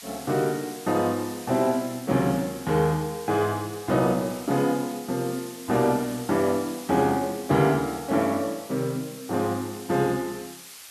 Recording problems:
hiss; slope +3 dB per octave, SNR 16 dB

